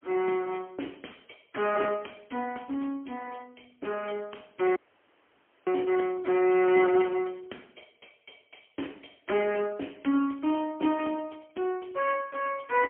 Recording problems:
phone line; 240 Hz to 3.1 kHz, AMR-NB, then MP3
audio cutting out; at 5 s for 1 s

